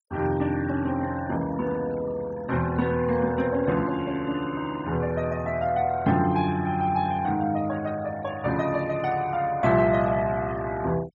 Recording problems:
noise reduction artefacts; signal-to-artefact ratio 21 dB

